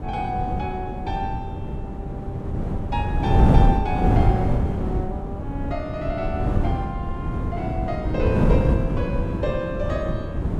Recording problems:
wind noise; below 220 Hz, SNR -5 dB

